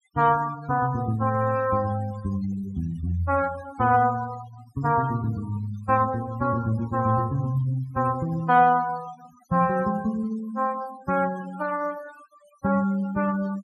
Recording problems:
noise reduction artefacts; signal-to-artefact ratio 19 dB

